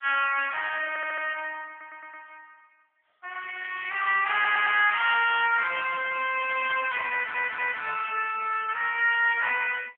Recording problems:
phone line; 410 Hz to 3.3 kHz, AMR-NB
audio stuttering; 4 times, first at 1 s

